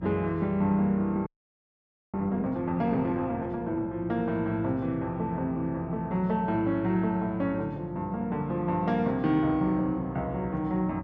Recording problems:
hum; 60 Hz, harmonics up to 480 Hz, SNR 19 dB
audio freezing; at 1.5 s for 1 s

